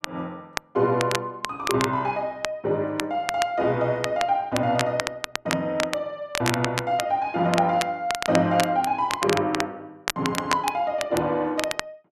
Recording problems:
crackle; vinyl, SNR 7 dB

